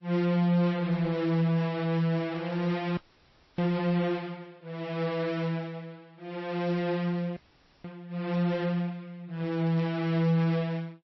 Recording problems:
codec artefacts; MP3, then AAC, log-spectral distance 3 dB, nothing above 5.5 kHz
distorted audio; hard clipping, uneven, signal-to-distortion ratio 11 dB
frozen audio; at 3 s for 0.5 s and at 7.5 s

